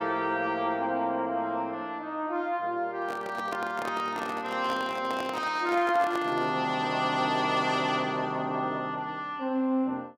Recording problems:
microphone handling noise; from 3 to 6.5 s; peak -3 dB vs average level

